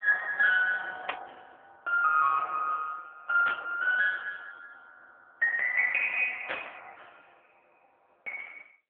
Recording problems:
phone line; 500 Hz to 2.8 kHz, AMR-NB
static burst; at 1 s, at 3.5 s and at 6.5 s; peak -3 dB vs average level

